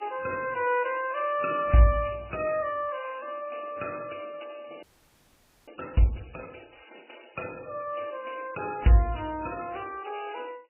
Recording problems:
codec artefacts; MP3, then AAC, log-spectral distance 9 dB, nothing above 2.9 kHz
audio freezing; at 5 s for 1 s

